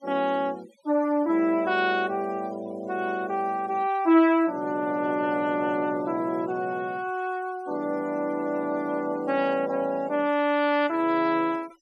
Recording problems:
noise reduction artefacts; signal-to-artefact ratio 25 dB

